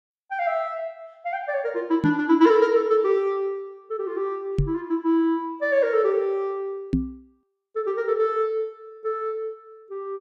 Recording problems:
microphone thump; at 2 s, at 4.5 s and at 7 s; peak +5 dB vs average level

